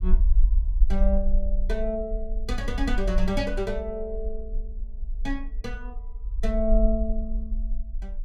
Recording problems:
rumble; below 44 Hz, SNR -1 dB

